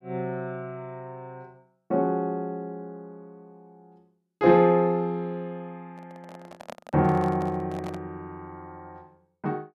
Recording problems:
microphone handling noise; from 6 to 8 s; peak -9 dB vs average level

